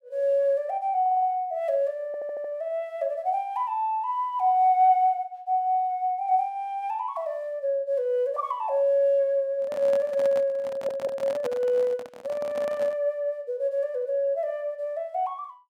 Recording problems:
stutter; at 1 s, at 2 s and at 11 s
microphone handling noise; from 9.5 to 13 s; peak -6 dB vs average level

